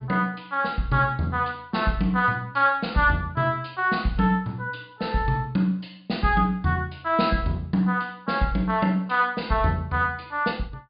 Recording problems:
treble missing; nothing above 4.9 kHz

